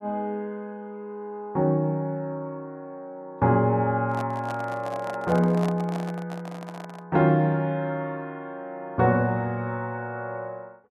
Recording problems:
handling noise; from 4 to 7 s; peak -4 dB vs average level

